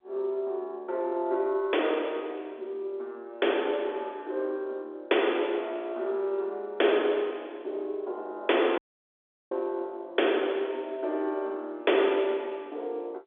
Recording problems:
telephone audio; 300 Hz to 3.6 kHz, G.711
dropout; at 9 s for 0.5 s

